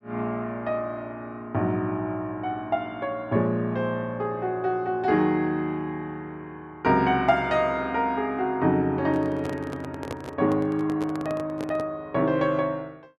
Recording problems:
microphone handling noise; from 9 to 12 s; peak -3 dB vs average level

